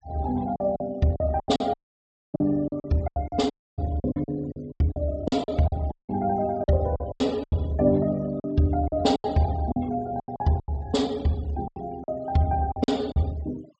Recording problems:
low-pass filter; nothing above 8 kHz
denoising artefacts; signal-to-artefact ratio 24 dB
lost packets; 14% of the sound replaced, filled with silence
audio cutting out; at 1.5 s for 0.5 s, at 3.5 s and at 6 s

